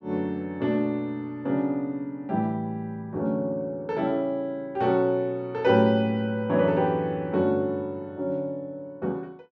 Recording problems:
none

